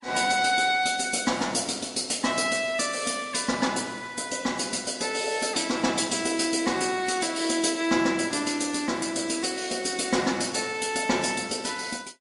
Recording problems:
lossy compression; MP3, log-spectral distance 6 dB, nothing above 10.7 kHz

